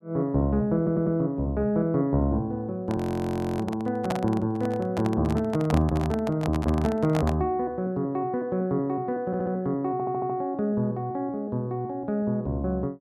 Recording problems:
audio stuttering; at 1 s, at 9.5 s and at 10 s
microphone handling noise; from 3 to 7.5 s; peak +1 dB vs average level
frozen audio; at 3 s for 0.5 s

